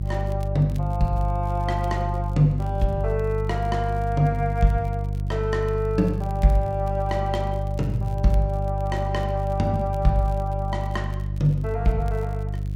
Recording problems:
hum; 50 Hz, harmonics up to 350 Hz, SNR 2 dB
crackle; vinyl, SNR 30 dB

